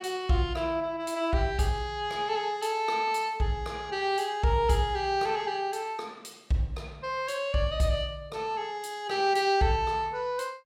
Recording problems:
none

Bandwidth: 16 kHz